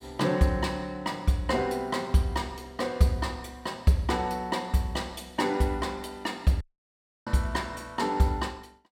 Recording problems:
audio cutting out; at 6.5 s for 0.5 s

